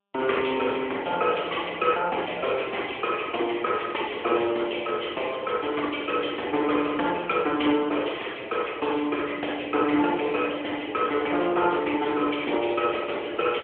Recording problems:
phone line; 260 Hz to 3.4 kHz, AMR-NB

